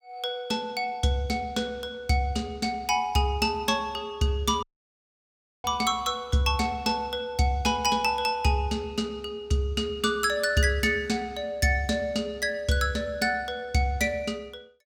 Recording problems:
audio cutting out; at 4.5 s for 1 s

